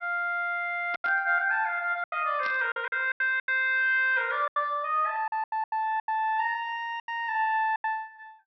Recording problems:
treble missing; nothing above 5.7 kHz
lost packets; 11% of the sound replaced, filled with silence
static burst; at 1 s and at 2.5 s; peak -10 dB vs average level

